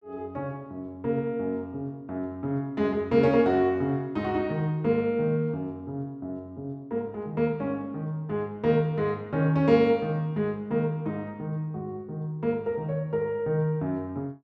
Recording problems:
none

